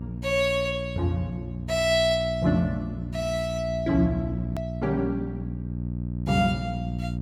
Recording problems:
electrical hum; 60 Hz, harmonics up to 540 Hz, SNR 6 dB
hard cut with a click; at 4.5 s

